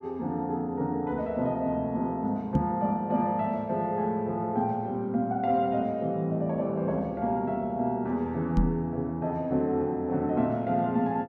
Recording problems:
microphone bump; at 2.5 s and at 8.5 s; peak +5 dB vs average level

